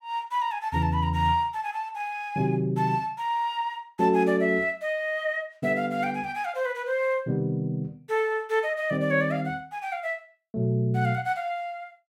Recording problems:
none

